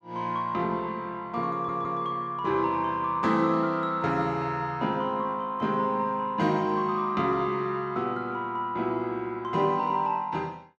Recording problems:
audio stuttering; at 1.5 s

